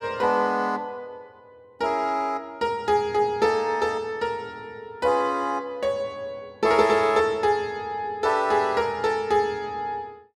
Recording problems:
none

